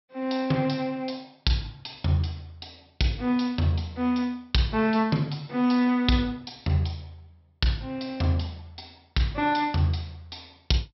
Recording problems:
treble missing; nothing above 5.6 kHz

